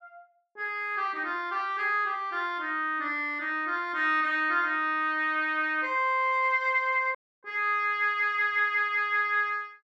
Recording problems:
audio cutting out; at 7 s

